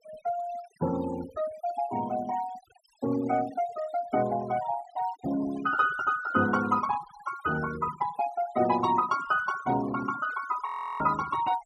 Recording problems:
denoising artefacts; signal-to-artefact ratio 15 dB
frozen audio; at 11 s

